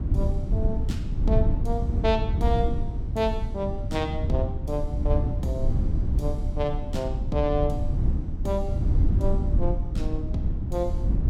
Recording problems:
low-frequency rumble; below 98 Hz, SNR -3 dB

